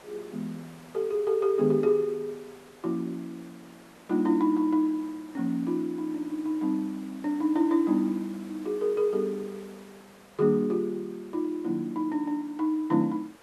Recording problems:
background hiss; SNR 24 dB

